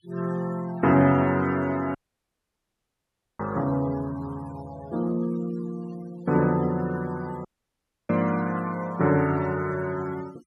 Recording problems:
denoising artefacts; signal-to-artefact ratio 21 dB
audio cutting out; at 2 s for 1.5 s and at 7.5 s for 0.5 s

